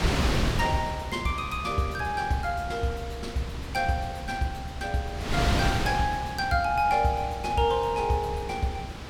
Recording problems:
wind noise; below 1.3 kHz, SNR 5 dB

